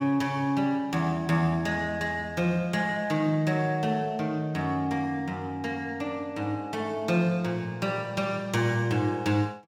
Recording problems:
none

